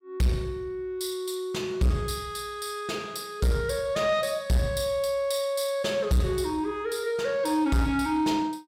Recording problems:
distorted audio; soft clipping, signal-to-distortion ratio 10 dB

